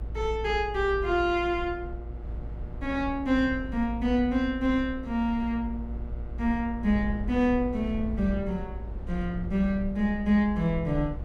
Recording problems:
hum; 60 Hz, harmonics up to 2.2 kHz, SNR 24 dB
low-frequency rumble; below 72 Hz, strongest tone 56 Hz, SNR 9 dB

